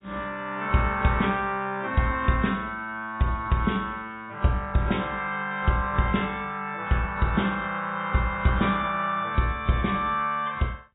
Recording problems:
codec artefacts; AAC, log-spectral distance 2 dB, nothing above 3.8 kHz

